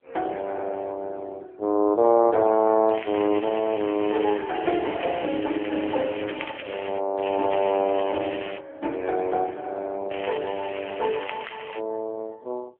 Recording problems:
phone line; 260 Hz to 3.2 kHz, AMR-NB
crackle; from 3 to 7 s, from 7 to 8.5 s and from 10 to 12 s; loose cable, SNR 13 dB

